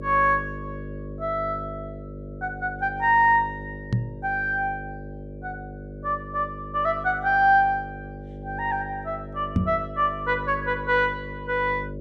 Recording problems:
hum; 50 Hz, harmonics up to 600 Hz, SNR 13 dB
microphone bump; at 4 s and at 9.5 s; peak +5 dB vs average level

